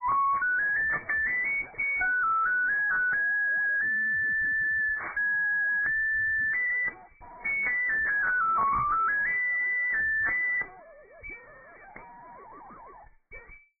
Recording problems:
lossy codec; AAC, then MP3, log-spectral distance 2 dB, nothing above 2.3 kHz
distorted audio; soft clipping, signal-to-distortion ratio 4 dB

